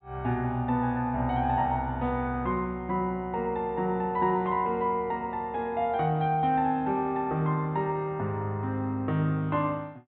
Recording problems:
treble cut off; nothing above 4 kHz

